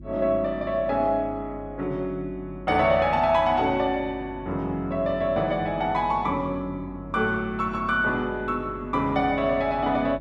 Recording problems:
hum; 50 Hz, harmonics up to 350 Hz, SNR 17 dB

